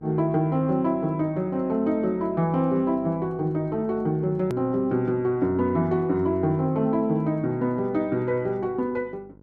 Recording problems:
electrical hum; 50 Hz, harmonics up to 1.1 kHz, SNR 25 dB
edit click; at 4.5 s

